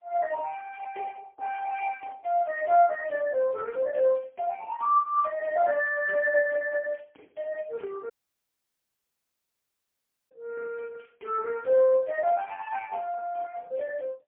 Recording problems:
phone line; 300 Hz to 2.3 kHz, AMR-NB, then MP3
audio cutting out; at 8 s for 2 s

